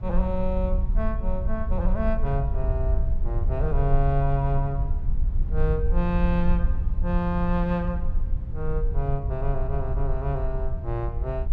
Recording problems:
rumble; below 60 Hz, strongest tone 22 Hz, SNR -1 dB

